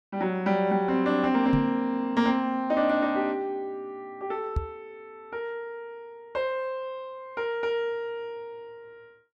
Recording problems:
microphone bump; at 1.5 s and at 4.5 s; peak +4 dB vs average level

